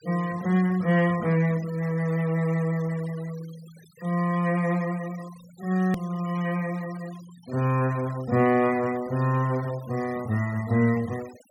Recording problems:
noise reduction artefacts; signal-to-artefact ratio 21 dB
hard cut with a click; at 6 s

